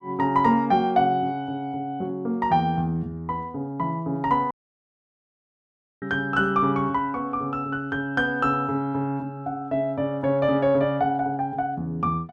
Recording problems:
dropout; at 4.5 s for 1.5 s

